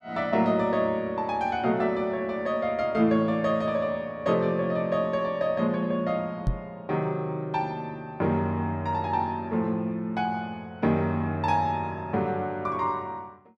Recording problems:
microphone thump; at 6.5 s; peak +3 dB vs average level

